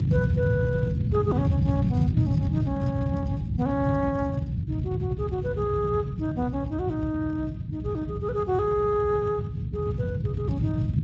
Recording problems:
lossy codec; Speex, log-spectral distance 2 dB
rumble; below 170 Hz, SNR -2 dB

